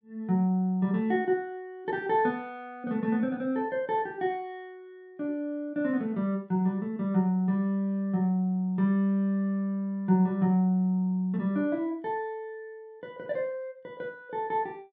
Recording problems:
none

